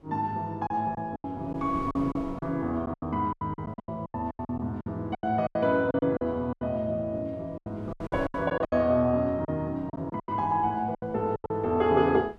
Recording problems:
wind on the microphone; below 470 Hz, SNR 20 dB
lost packets; 16% of the sound replaced, filled with silence

